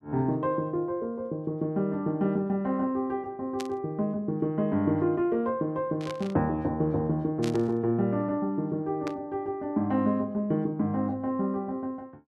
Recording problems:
burst of static; 4 times, first at 3.5 s; peak -6 dB vs average level

